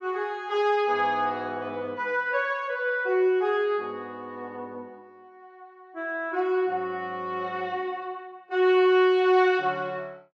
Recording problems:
none

